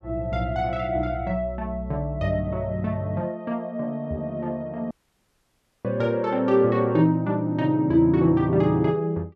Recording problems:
dropout; at 5 s for 1 s

